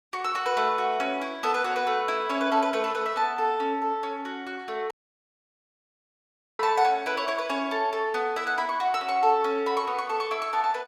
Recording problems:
audio cutting out; at 5 s for 1.5 s

